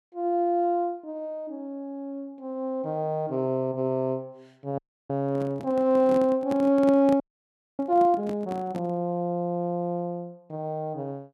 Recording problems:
frozen audio; at 5 s and at 7 s for 0.5 s
microphone handling noise; from 5 to 9 s; peak -3 dB vs average level

